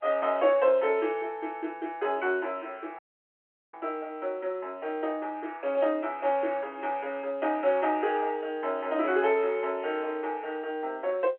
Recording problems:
phone line; 320 Hz to 3.4 kHz, G.711
dropout; at 3 s for 0.5 s

